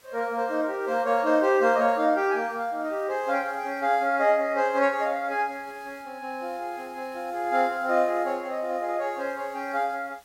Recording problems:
background hiss; slope -1 dB per octave, SNR 29 dB

